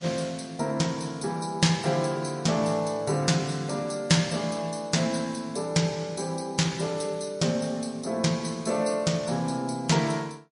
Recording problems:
lossy compression; MP3, log-spectral distance 4 dB, nothing above 10.4 kHz

